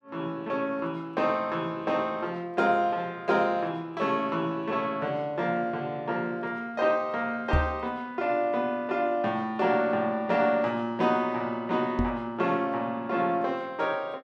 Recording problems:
knock on the microphone; at 7.5 s and at 12 s; peak +5 dB vs average level

